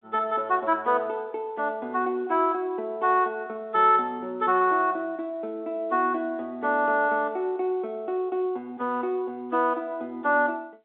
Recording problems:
phone line; 260 Hz to 3.9 kHz, G.711

